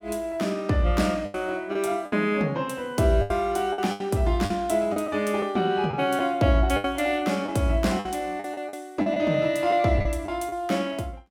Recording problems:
packet loss; 8% of the sound replaced, filled with the last packet

